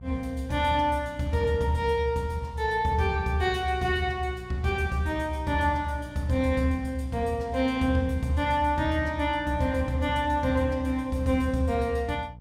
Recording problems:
hum; 60 Hz, harmonics up to 480 Hz, SNR 18 dB

